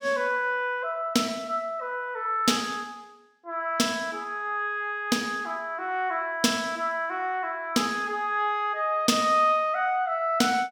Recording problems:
none

